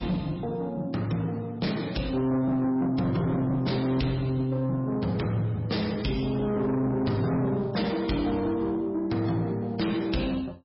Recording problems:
lossy compression; MP3, log-spectral distance 3 dB, nothing above 5.5 kHz
distorted audio; soft clipping, signal-to-distortion ratio 10 dB

